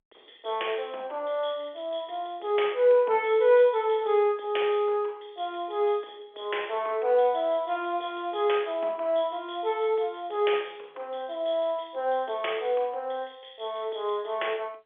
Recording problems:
phone line; 370 Hz to 3.5 kHz, G.711

